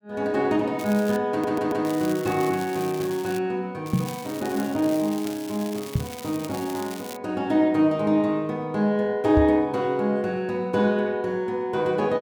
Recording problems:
crackling; at 1 s, from 1.5 to 3.5 s and from 4 to 7 s; loose cable, SNR 16 dB
audio stuttering; at 1.5 s
microphone bump; at 4 s, at 6 s and at 9.5 s; peak +5 dB vs average level

